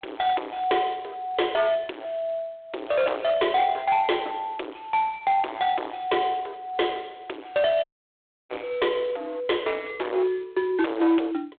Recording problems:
telephone audio; 280 Hz to 3.6 kHz, G.726
distortion; hard clipping, signal-to-distortion ratio 7 dB
dropout; at 8 s for 0.5 s

